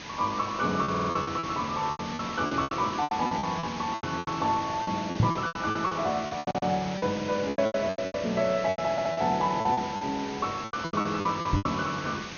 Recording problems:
treble missing; nothing above 6.6 kHz
hiss; slope -2 dB per octave, SNR 10 dB
lost packets; 18% of the sound replaced, filled with repeated pitch periods
audio stuttering; at 1 s, at 6.5 s and at 9 s
knock on the microphone; at 5 s and at 12 s; peak +8 dB vs average level

